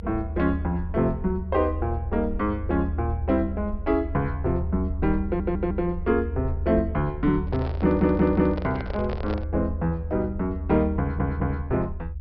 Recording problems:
treble missing; nothing above 5.5 kHz
rumble; below 78 Hz, strongest tone 76 Hz, SNR 6 dB
audio stuttering; at 5.5 s, at 8 s and at 11 s
microphone handling noise; from 7.5 to 9.5 s; peak -5 dB vs average level

